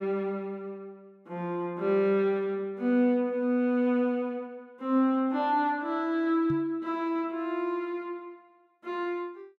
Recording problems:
knock on the microphone; at 6.5 s; peak -4 dB vs average level

